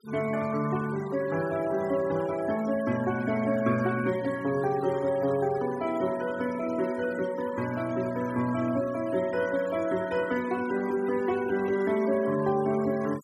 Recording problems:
denoising artefacts; signal-to-artefact ratio 16 dB

